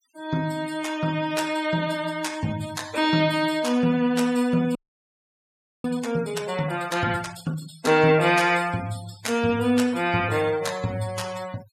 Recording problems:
noise reduction artefacts; signal-to-artefact ratio 18 dB
audio freezing; at 5 s for 1 s

